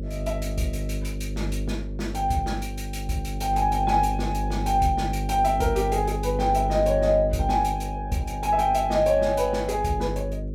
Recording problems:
electrical hum; 50 Hz, harmonics up to 550 Hz, SNR 6 dB

